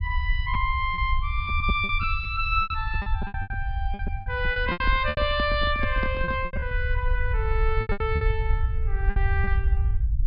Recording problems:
low-pass filter; nothing above 5.5 kHz
rumble; below 72 Hz, SNR 2 dB
lost packets; 13% of the sound replaced, filled with repeated pitch periods
microphone handling noise; from 4.5 to 6.5 s; peak -1 dB vs average level

